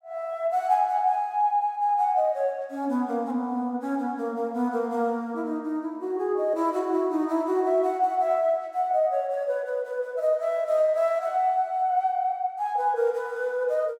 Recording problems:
none

